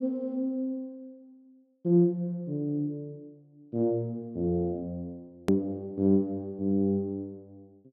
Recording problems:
edit click; at 5.5 s

